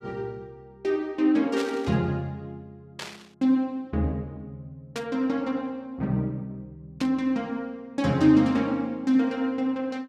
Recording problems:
burst of static; 4 times, first at 1.5 s; peak -5 dB vs average level

